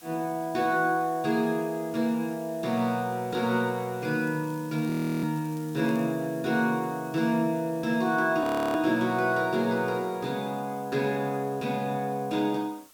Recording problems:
hiss; slope 0 dB per octave, SNR 23 dB
crackle; from 4 to 6 s; loose cable, SNR 27 dB
audio freezing; at 5 s and at 8.5 s

